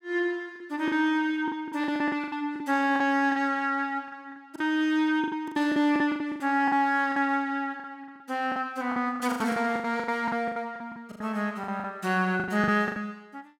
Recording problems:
lost packets; 16% of the sound replaced, filled with the last packet

